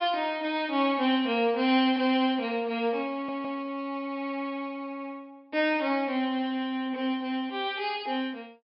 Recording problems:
low-pass filter; nothing above 5.5 kHz
audio stuttering; at 3 s

